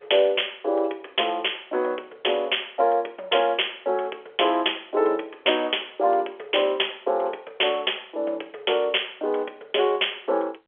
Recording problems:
telephone audio; 340 Hz to 3.4 kHz, G.711

